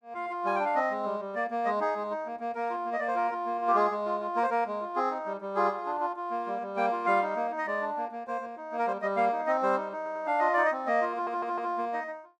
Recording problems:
audio stuttering; at 10 s and at 11 s

